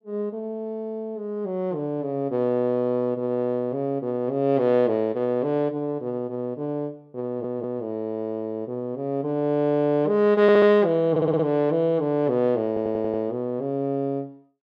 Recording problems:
audio stuttering; 4 times, first at 7.5 s

